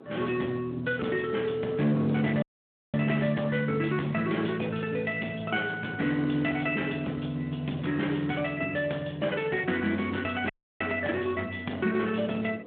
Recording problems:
phone line; 150 Hz to 3.4 kHz, Speex
distorted audio; hard clipping, signal-to-distortion ratio 14 dB
wind noise; below 520 Hz, SNR 21 dB
audio cutting out; at 2.5 s for 0.5 s and at 10 s

